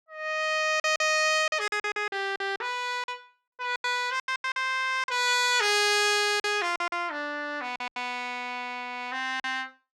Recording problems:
lost packets; 11% of the sound replaced, filled with silence

